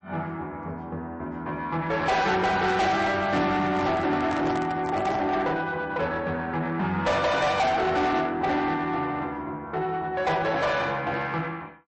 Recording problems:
lossy compression; MP3, log-spectral distance 2 dB, nothing above 8 kHz
distortion; soft clipping, signal-to-distortion ratio 7 dB
handling noise; from 2.5 to 5.5 s; peak -1 dB vs average level

